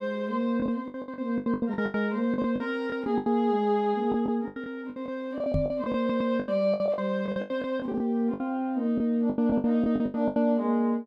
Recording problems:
packet loss; 18% of the sound replaced, filled with the last packet
knock on the microphone; at 5.5 s; peak +2 dB vs average level
audio stuttering; at 6 s

